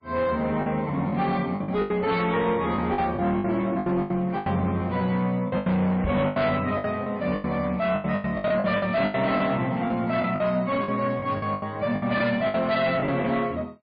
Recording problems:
codec artefacts; MP3, log-spectral distance 2 dB, nothing above 4.6 kHz
distorted audio; soft clipping, signal-to-distortion ratio 11 dB
packet loss; 13% of the sound replaced, filled with the last packet
microphone thump; at 6 s; peak 0 dB vs average level

